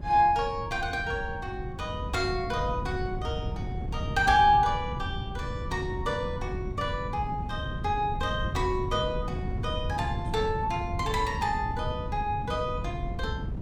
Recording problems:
wind noise; below 160 Hz, SNR 6 dB

